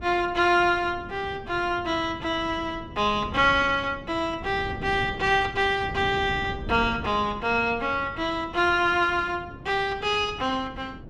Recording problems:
wind on the microphone; below 290 Hz, SNR 15 dB

